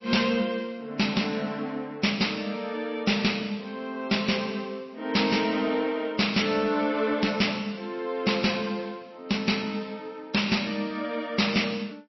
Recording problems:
lossy compression; MP3, log-spectral distance 4 dB, nothing above 5.7 kHz
distorted audio; soft clipping, signal-to-distortion ratio 10 dB

